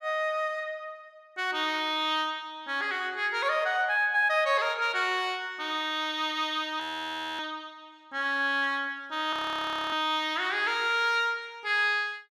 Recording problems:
audio freezing; at 7 s for 0.5 s and at 9.5 s for 0.5 s

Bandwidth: 14 kHz